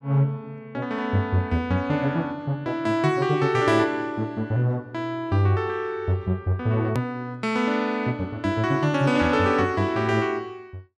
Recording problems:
edit click; at 7 s

